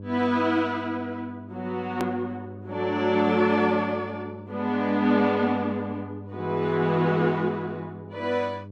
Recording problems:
hum; 50 Hz, harmonics up to 600 Hz, SNR 16 dB
edit click; at 2 s

